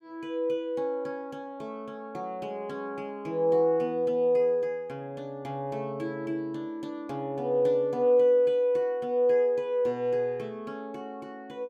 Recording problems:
none

